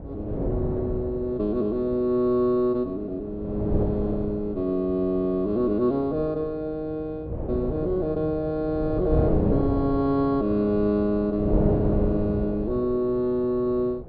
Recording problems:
low-pass filter; nothing above 4.9 kHz
wind noise; below 410 Hz, SNR 5 dB

